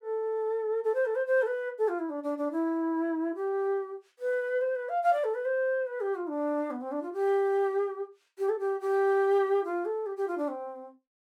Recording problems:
none

